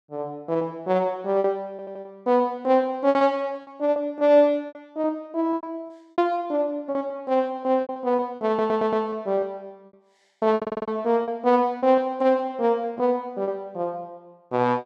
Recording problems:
packet loss; 11% of the sound replaced, filled with repeated pitch periods
stutter; at 1.5 s, at 8.5 s and at 11 s

